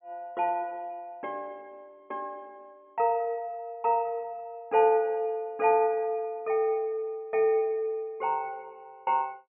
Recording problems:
low-pass filter; nothing above 3.4 kHz

